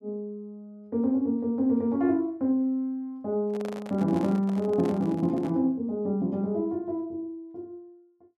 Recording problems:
microphone handling noise; from 3.5 to 5.5 s; peak -8 dB vs average level

